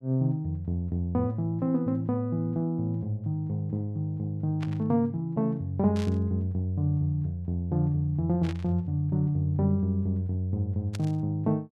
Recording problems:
static burst; 4 times, first at 4.5 s; peak -8 dB vs average level

